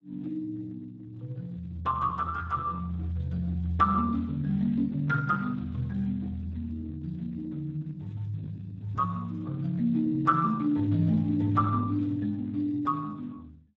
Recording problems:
lossy codec; Speex, log-spectral distance 2 dB

